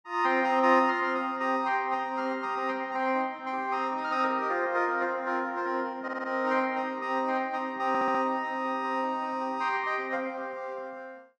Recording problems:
stutter; at 6 s and at 8 s

